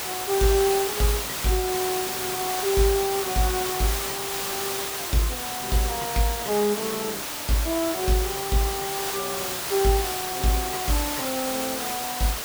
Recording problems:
background hiss; slope -1 dB per octave, SNR 1 dB

